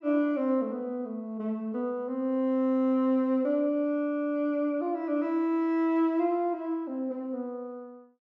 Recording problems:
none

